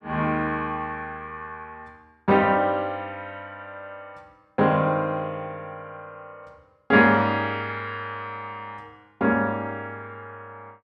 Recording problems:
none

